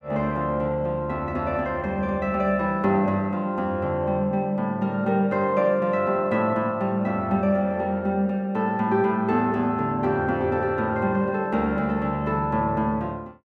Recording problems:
none

